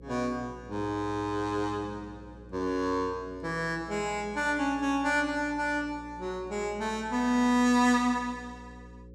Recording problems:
hum; 60 Hz, harmonics up to 540 Hz, SNR 20 dB

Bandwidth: 15 kHz